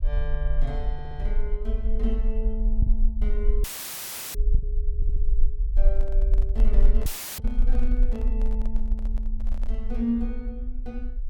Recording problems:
low-frequency rumble; below 42 Hz, strongest tone 18 Hz, SNR -8 dB
lost packets; 1.9% of the sound replaced, filled with the last packet
audio stuttering; at 1 s and at 5 s
audio cutting out; at 3.5 s for 0.5 s and at 7 s; filled with static
microphone handling noise; from 6 to 10 s; peak -3 dB vs average level

